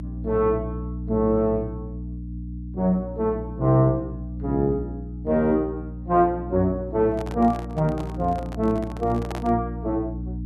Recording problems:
hum; 60 Hz, harmonics up to 300 Hz, SNR 9 dB
handling noise; from 7 to 9.5 s; peak -5 dB vs average level

